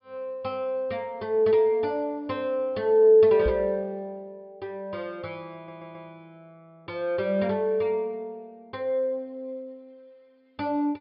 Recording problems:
treble cut off; nothing above 5.5 kHz
microphone bump; at 3.5 s; peak -2 dB vs average level
stutter; at 5.5 s

